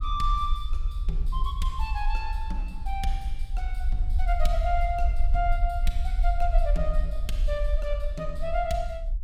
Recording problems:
rumble; below 46 Hz, SNR -3 dB

